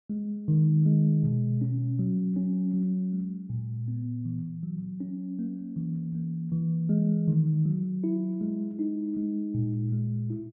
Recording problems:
none

